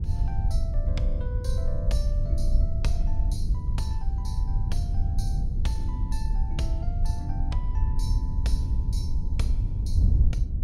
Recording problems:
wind noise; below 76 Hz, SNR -10 dB

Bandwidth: 16 kHz